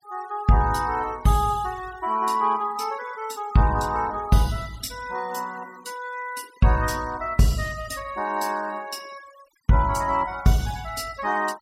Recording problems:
noise reduction artefacts; signal-to-artefact ratio 22 dB

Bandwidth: 16 kHz